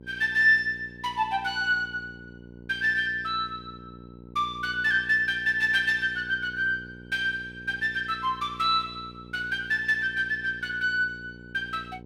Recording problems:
hum; 60 Hz, harmonics up to 960 Hz, SNR 20 dB

